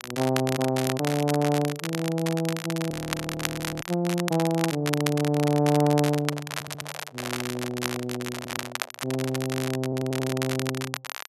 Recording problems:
crackle; vinyl, SNR 7 dB
audio freezing; at 3 s for 1 s
microphone handling noise; from 6 to 9.5 s; peak -9 dB vs average level
stutter; at 6.5 s, at 8.5 s and at 10 s

